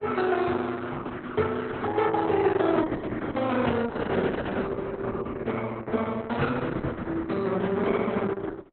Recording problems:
lossy compression; Opus, log-spectral distance 4 dB, nothing above 4 kHz

